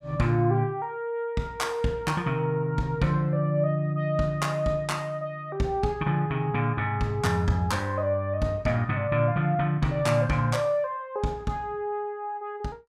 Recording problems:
none

